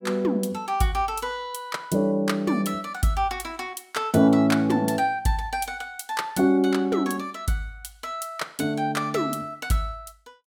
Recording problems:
none

